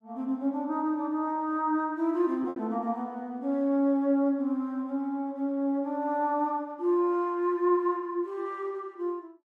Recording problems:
packet loss; 0.9% of the sound replaced, filled with repeated pitch periods

